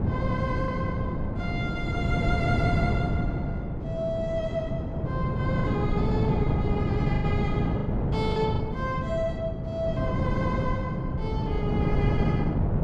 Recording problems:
wind on the microphone; below 250 Hz, SNR -5 dB
lost packets; 3% of the sound replaced, filled with the last packet

